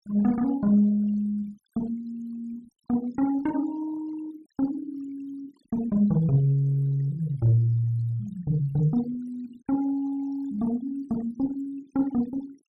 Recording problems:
noise reduction artefacts; signal-to-artefact ratio 23 dB

